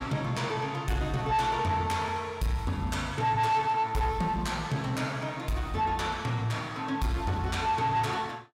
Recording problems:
distorted audio; soft clipping, signal-to-distortion ratio 12 dB

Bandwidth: 16.5 kHz